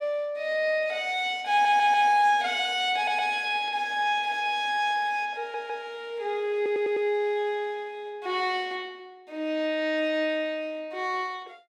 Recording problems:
stutter; 4 times, first at 1.5 s

